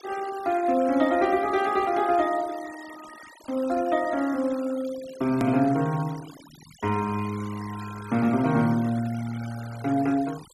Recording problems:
denoising artefacts; signal-to-artefact ratio 19 dB
hard cut with a click; at 5.5 s

